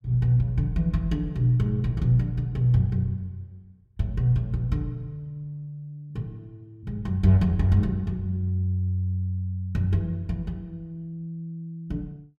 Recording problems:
none

